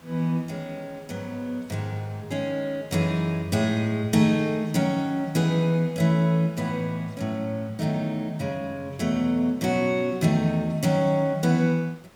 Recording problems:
hiss; slope -5 dB per octave, SNR 27 dB

